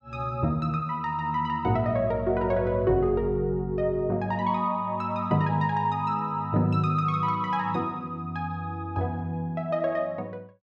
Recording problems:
none

